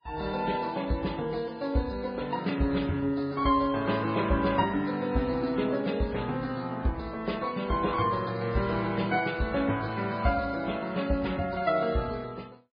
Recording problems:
codec artefacts; MP3, then Vorbis, log-spectral distance 4 dB, nothing above 4.4 kHz

